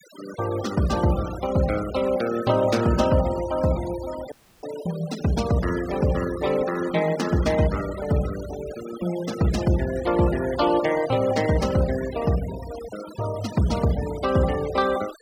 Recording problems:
denoising artefacts; signal-to-artefact ratio 15 dB
dropout; at 4.5 s

